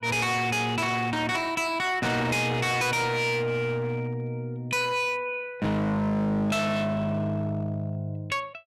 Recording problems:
distorted audio; hard clipping, signal-to-distortion ratio 6 dB

